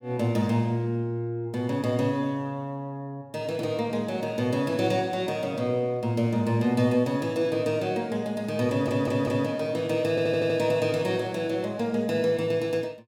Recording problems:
audio stuttering; at 8.5 s and at 10 s

